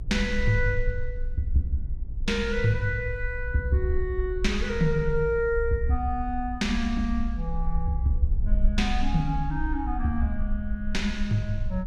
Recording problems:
rumble; below 56 Hz, strongest tone 18 Hz, SNR 5 dB

